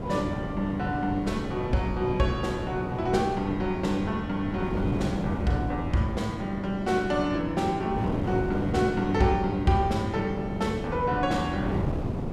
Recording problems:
wind noise; below 400 Hz, SNR 5 dB

